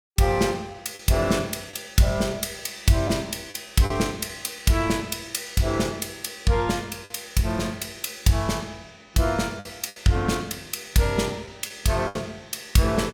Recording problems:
packet loss; 3% of the sound replaced, filled with the last packet

